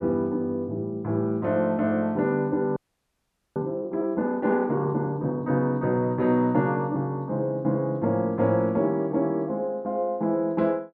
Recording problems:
audio freezing; at 3 s for 1 s

